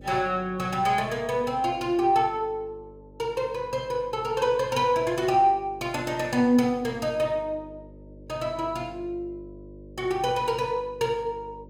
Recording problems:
hum; 50 Hz, harmonics up to 600 Hz, SNR 22 dB

